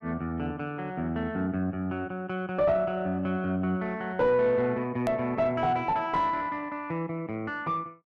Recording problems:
distortion; soft clipping, signal-to-distortion ratio 10 dB
click at an edit; at 5 s

